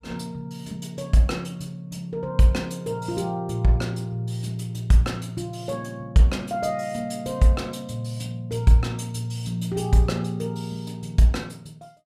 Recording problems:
none

